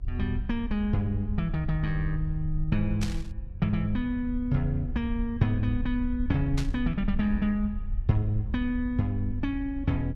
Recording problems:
hum; 60 Hz, harmonics up to 720 Hz, SNR 24 dB
low-frequency rumble; below 64 Hz, SNR 7 dB
burst of static; at 3 s and at 6.5 s; peak -3 dB vs average level

